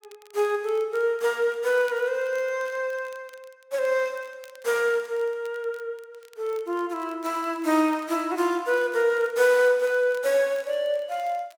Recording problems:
crackling; vinyl, SNR 29 dB

